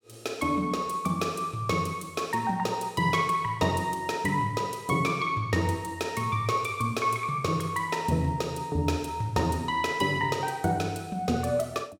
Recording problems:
none

